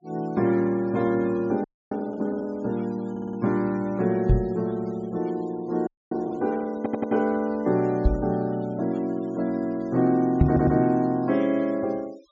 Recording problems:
low-pass filter; nothing above 7.5 kHz
noise reduction artefacts; signal-to-artefact ratio 27 dB
frozen audio; at 1.5 s and at 6 s
audio stuttering; at 3 s, at 7 s and at 10 s
microphone bump; at 4.5 s, at 8 s and at 10 s; peak +10 dB vs average level

